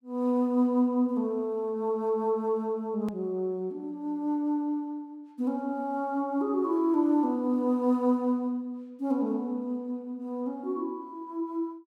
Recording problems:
hard cut with a click; at 3 s

